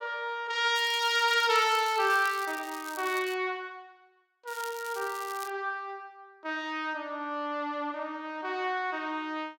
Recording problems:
crackle; at 1 s, from 1.5 to 3.5 s and from 4.5 to 5.5 s; loose cable, SNR 15 dB

